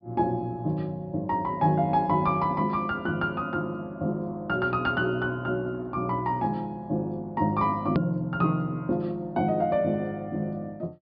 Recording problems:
treble missing; nothing above 5.2 kHz
hard cut with a click; at 8 s

